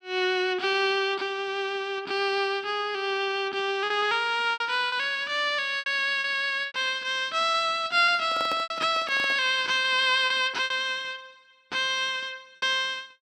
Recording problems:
packet loss; 5% of the sound replaced, filled with repeated pitch periods
microphone handling noise; from 8 to 9.5 s; peak -7 dB vs average level

